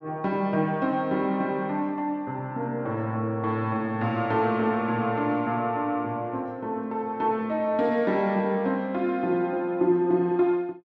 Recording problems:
none

